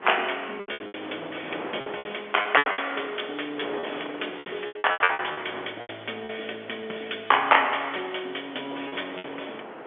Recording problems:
telephone audio; 300 Hz to 3.3 kHz, G.711
wind on the microphone; below 1.3 kHz, SNR 13 dB
packet loss; 13% of the sound replaced, filled with repeated pitch periods

